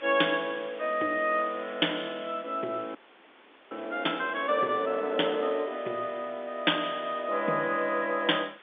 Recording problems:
phone line; 240 Hz to 3.6 kHz, G.711
background hiss; SNR 21 dB
audio freezing; at 3 s for 1 s

